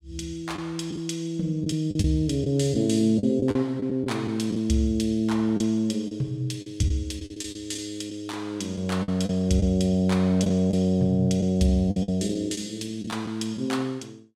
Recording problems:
lost packets; 7% of the sound replaced, filled with the last packet

